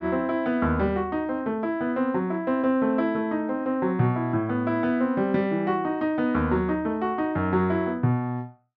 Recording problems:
none

